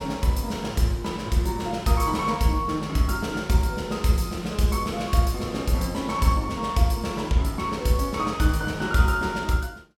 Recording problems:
none

